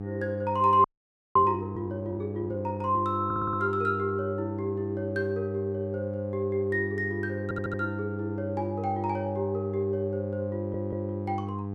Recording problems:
hum; 50 Hz, harmonics up to 900 Hz, SNR 6 dB
audio freezing; at 1 s for 0.5 s
stutter; at 3.5 s, at 7.5 s and at 11 s

